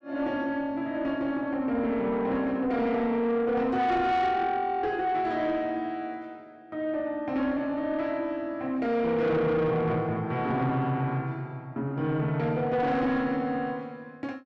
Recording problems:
distortion; soft clipping, signal-to-distortion ratio 11 dB

